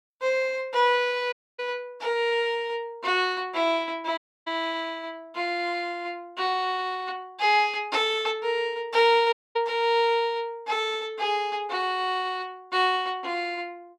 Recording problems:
dropout; at 1.5 s, at 4 s and at 9.5 s

